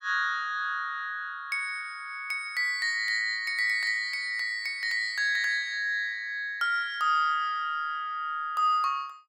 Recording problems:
none

